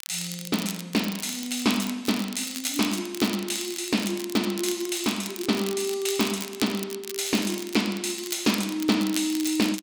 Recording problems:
crackle; vinyl, SNR 10 dB

